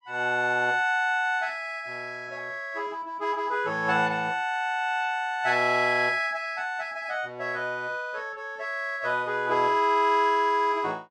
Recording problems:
none

